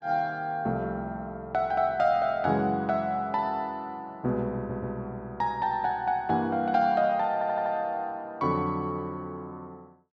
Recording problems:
audio stuttering; at 4.5 s and at 7.5 s

